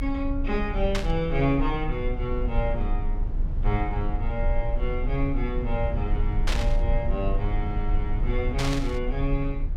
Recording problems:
rumble; below 54 Hz, strongest tone 28 Hz, SNR 0 dB
static burst; at 1 s, at 6.5 s and at 8.5 s; peak +3 dB vs average level

